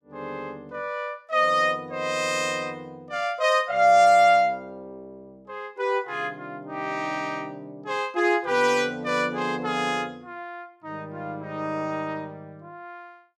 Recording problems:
none

